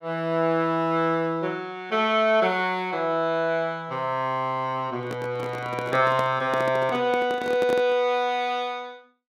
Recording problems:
microphone handling noise; from 5 to 8 s; peak -4 dB vs average level

